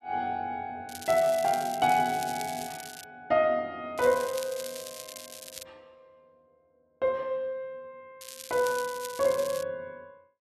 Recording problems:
crackling; from 1 to 3 s, from 4 to 5.5 s and from 8 to 9.5 s; loose cable, SNR 13 dB

